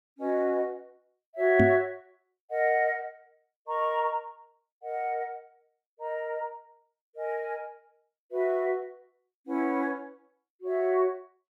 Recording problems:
microphone bump; at 1.5 s; peak +8 dB vs average level

